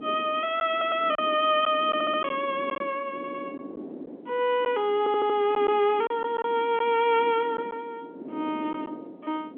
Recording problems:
phone line; 190 Hz to 3.6 kHz, G.711
wind on the microphone; below 420 Hz, SNR 16 dB
packet loss; 4% of the sound replaced, filled with silence
audio stuttering; 4 times, first at 0.5 s

